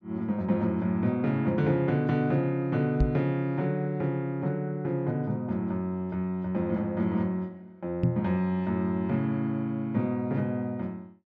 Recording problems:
treble cut off; nothing above 8 kHz
microphone thump; at 3 s and at 8 s; peak +6 dB vs average level

